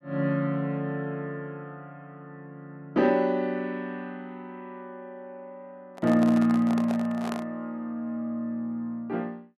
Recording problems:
handling noise; from 6 to 7.5 s; peak -3 dB vs average level

